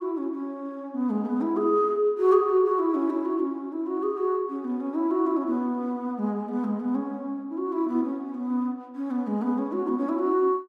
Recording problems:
none

